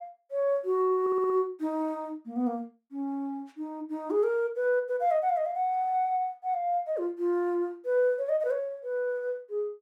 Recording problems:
audio stuttering; at 1 s

